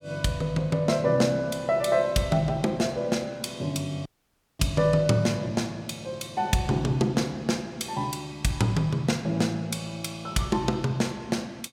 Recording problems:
audio cutting out; at 4 s for 0.5 s

